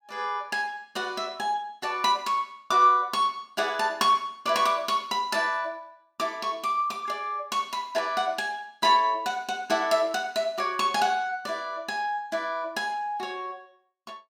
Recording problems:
none

